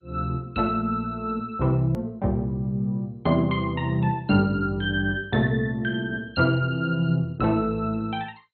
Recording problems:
lossy compression; MP2, log-spectral distance 2 dB, nothing above 3.6 kHz
click at an edit; at 2 s

